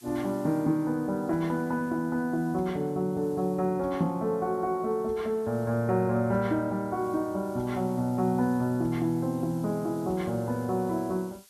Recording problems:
hiss; slope +3 dB per octave, SNR 26 dB

